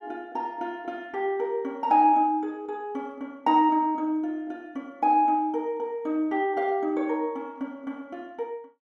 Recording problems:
none

